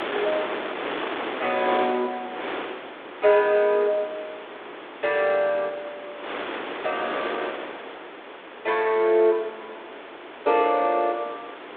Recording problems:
telephone audio; 260 Hz to 3.7 kHz, G.726
wind noise; below 2.1 kHz, SNR 10 dB

